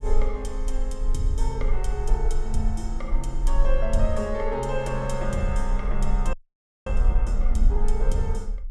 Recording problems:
low-frequency rumble; below 40 Hz, strongest tone 22 Hz, SNR -2 dB
frozen audio; at 6.5 s for 0.5 s

